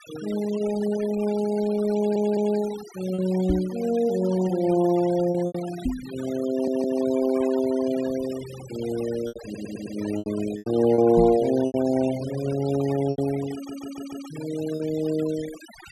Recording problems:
noise reduction artefacts; signal-to-artefact ratio 16 dB
packet loss; 5% of the sound replaced, filled with repeated pitch periods
audio stuttering; 4 times, first at 2 s
microphone thump; at 3.5 s, at 6 s and at 11 s; peak +2 dB vs average level

